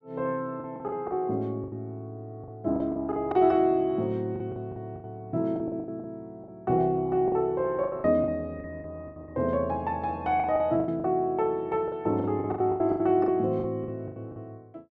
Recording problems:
lost packets; 14% of the sound replaced, filled with the last packet

